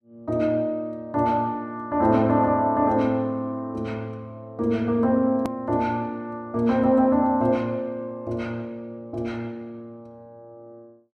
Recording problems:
edit click; at 5.5 s

